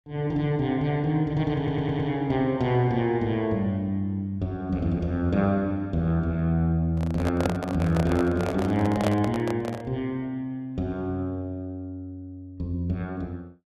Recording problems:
stutter; at 1.5 s
microphone handling noise; from 7 to 10 s; peak +3 dB vs average level

